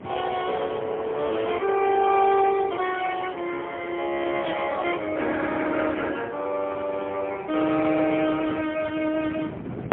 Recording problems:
telephone audio; 280 Hz to 3.3 kHz, AMR-NB, then MP3
wind noise; below 470 Hz, SNR 18 dB

